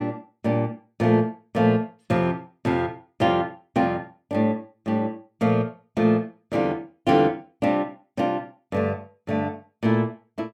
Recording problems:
none

